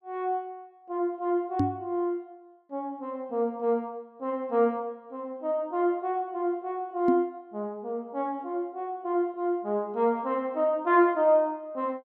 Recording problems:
knock on the microphone; at 1.5 s and at 7 s; peak +6 dB vs average level

